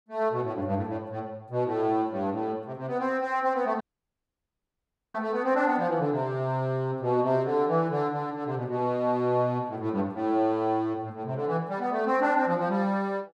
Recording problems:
dropout; at 4 s for 1.5 s

